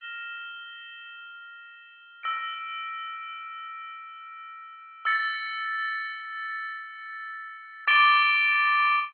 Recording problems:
lossy codec; MP2, log-spectral distance 3 dB, nothing above 4 kHz

